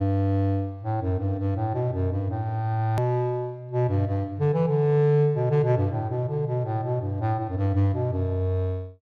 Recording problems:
hard cut with a click; at 3 s

